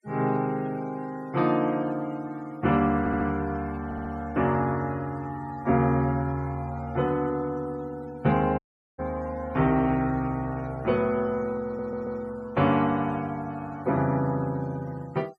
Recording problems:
noise reduction artefacts; signal-to-artefact ratio 24 dB
audio stuttering; at 3 s, at 4 s and at 12 s
audio cutting out; at 8.5 s

